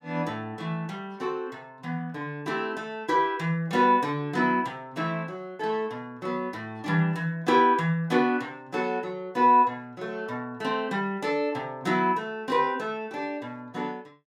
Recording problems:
none

